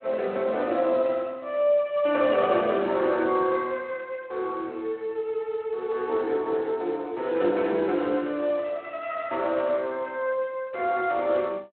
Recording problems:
phone line; 260 Hz to 3.3 kHz, Speex

